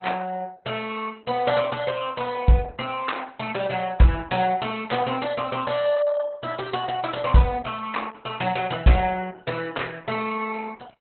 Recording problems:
lossy compression; MP2, then Opus, log-spectral distance 5 dB, nothing above 4 kHz

